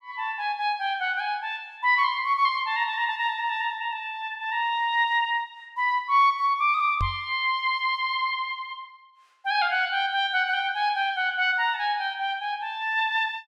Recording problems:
knock on the microphone; at 7 s; peak -1 dB vs average level

